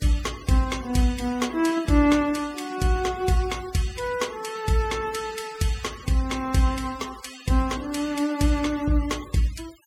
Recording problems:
denoising artefacts; signal-to-artefact ratio 17 dB

